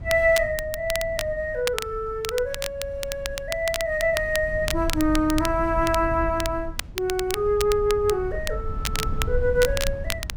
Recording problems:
rumble; below 86 Hz, SNR 10 dB
crackling; vinyl, SNR 9 dB

